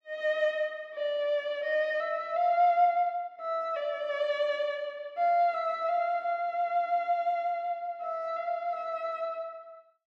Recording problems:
none

